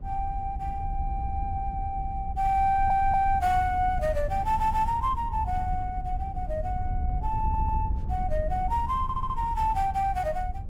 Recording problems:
wind noise; below 78 Hz, SNR 6 dB
stutter; 4 times, first at 2.5 s

